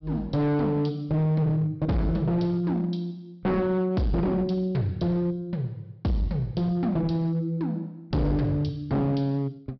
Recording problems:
treble missing; nothing above 5.5 kHz
distorted audio; hard clipping, signal-to-distortion ratio 7 dB

